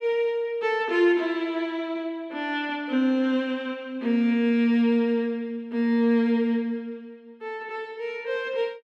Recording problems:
none

